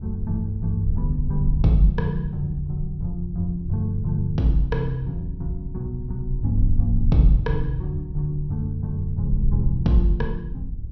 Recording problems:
treble missing; nothing above 6.1 kHz
wind on the microphone; below 66 Hz, SNR 5 dB

